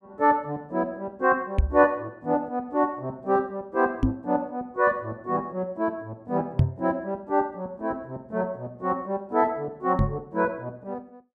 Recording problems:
microphone thump; 4 times, first at 1.5 s; peak +9 dB vs average level

